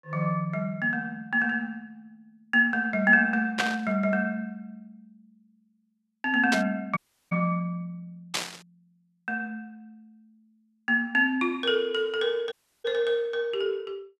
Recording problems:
burst of static; at 3.5 s, at 6.5 s and at 8.5 s; peak +3 dB vs average level
dropout; at 7 s and at 13 s

